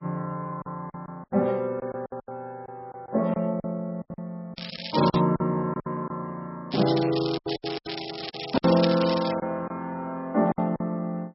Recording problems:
codec artefacts; MP3, log-spectral distance 6 dB, nothing above 4.5 kHz
lost packets; 12% of the sound replaced, filled with silence
crackle; at 4.5 s and from 6.5 to 9.5 s; loose cable, SNR 8 dB

